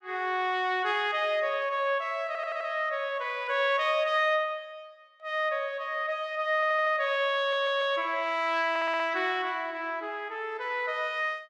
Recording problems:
audio stuttering; 4 times, first at 2.5 s

